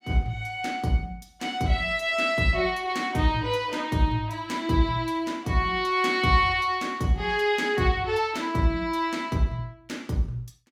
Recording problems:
none

